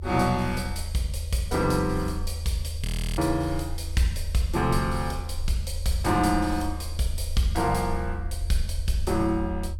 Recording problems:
rumble; below 80 Hz, SNR 6 dB
audio freezing; at 3 s

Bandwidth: 17 kHz